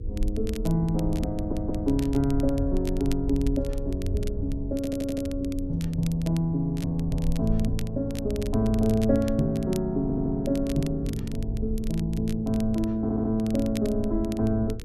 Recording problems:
mains hum; 60 Hz, harmonics up to 480 Hz, SNR 19 dB
low-frequency rumble; below 68 Hz, SNR 8 dB
crackle; vinyl, SNR 19 dB
audio stuttering; 4 times, first at 1.5 s

